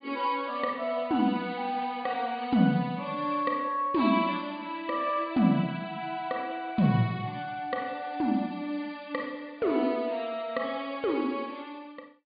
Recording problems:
treble missing; nothing above 4.8 kHz

